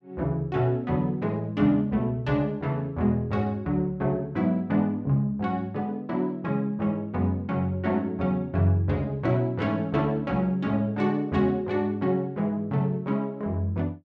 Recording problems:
none

